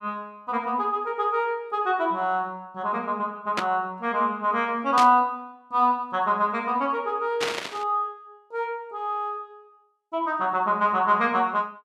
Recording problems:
burst of static; at 3.5 s, at 5 s and at 7.5 s; peak +2 dB vs average level

